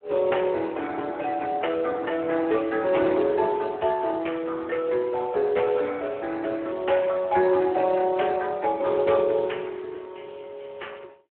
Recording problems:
phone line; 300 Hz to 3.2 kHz, Speex

